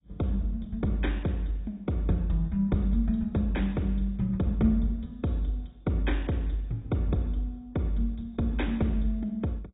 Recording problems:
low-pass filter; nothing above 3.8 kHz
lossy compression; MP2, log-spectral distance 2 dB

